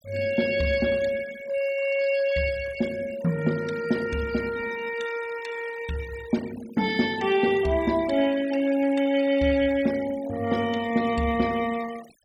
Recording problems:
noise reduction artefacts; signal-to-artefact ratio 17 dB

